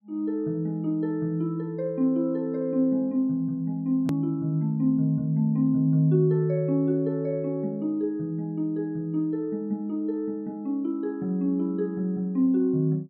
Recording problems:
hard cut with a click; at 4 s

